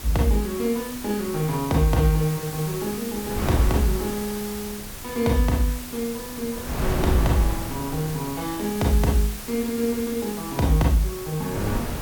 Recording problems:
background hiss; slope 0 dB per octave, SNR 11 dB
wind on the microphone; below 460 Hz, SNR 10 dB

